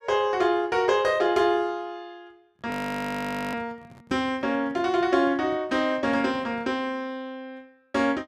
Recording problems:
handling noise; from 2.5 to 6.5 s; peak -10 dB vs average level
frozen audio; at 2.5 s for 1 s

